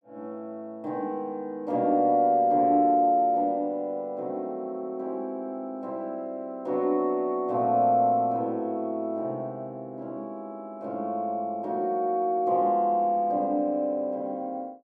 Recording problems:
none

